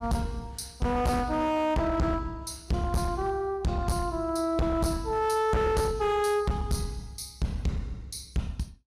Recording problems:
distorted audio; hard clipping, uneven, signal-to-distortion ratio 7 dB

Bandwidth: 14.5 kHz